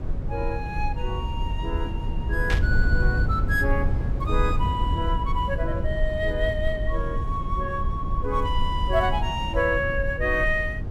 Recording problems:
low-frequency rumble; below 90 Hz, SNR 1 dB
static burst; at 2.5 s; peak +1 dB vs average level

